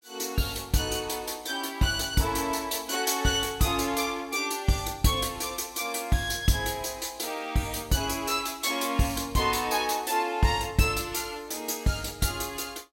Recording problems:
none

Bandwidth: 16.5 kHz